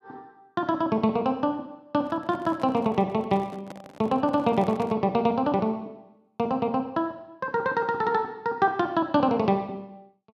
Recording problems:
handling noise; from 2 to 5 s; peak -10 dB vs average level

